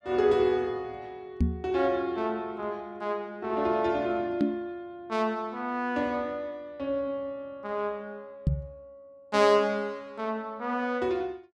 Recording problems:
microphone bump; at 1.5 s, at 4.5 s and at 8.5 s; peak +7 dB vs average level

